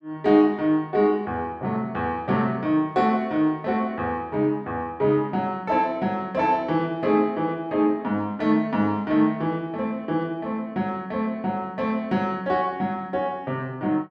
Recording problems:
none

